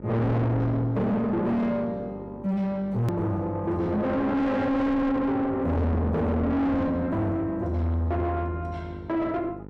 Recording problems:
distortion; soft clipping, signal-to-distortion ratio 5 dB
hum; 50 Hz, harmonics up to 1.4 kHz, SNR 19 dB
click at an edit; at 3 s

